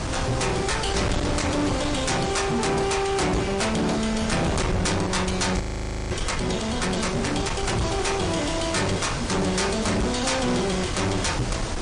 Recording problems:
codec artefacts; MP3, log-spectral distance 6 dB
distortion; hard clipping, uneven, signal-to-distortion ratio 7 dB
hiss; slope -4 dB per octave, SNR 10 dB
wind noise; below 620 Hz, SNR 6 dB
audio freezing; at 5.5 s for 0.5 s

